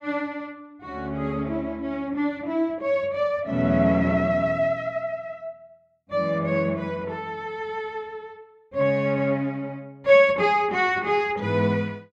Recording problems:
none

